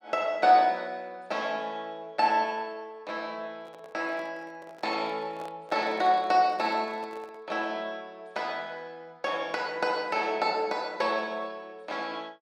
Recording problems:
handling noise; from 3.5 to 7.5 s; peak -11 dB vs average level

